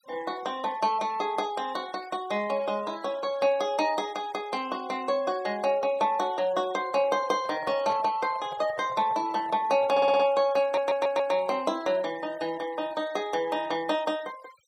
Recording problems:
noise reduction artefacts; signal-to-artefact ratio 22 dB
microphone handling noise; from 7 to 10 s; peak -9 dB vs average level
stutter; at 10 s and at 11 s

